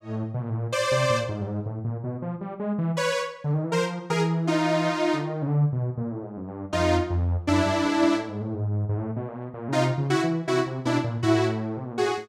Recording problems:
none

